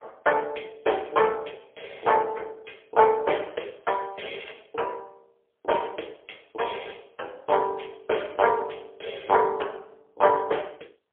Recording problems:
phone line; 320 Hz to 3.3 kHz, AMR-NB, then MP3

